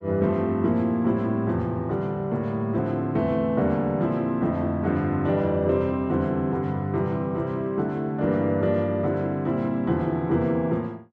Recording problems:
none

